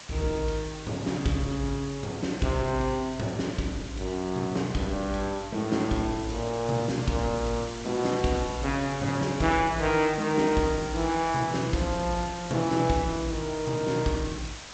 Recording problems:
codec artefacts; G.722, log-spectral distance 11 dB, nothing above 7.3 kHz
background hiss; slope 0 dB per octave, SNR 13 dB

